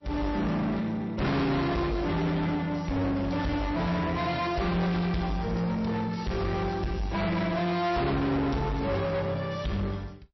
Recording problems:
lossy compression; MP3, log-spectral distance 3 dB, nothing above 5.7 kHz
distortion; soft clipping, signal-to-distortion ratio 6 dB

